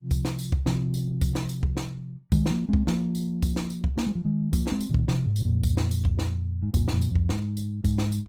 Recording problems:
codec artefacts; Opus, log-spectral distance 2 dB

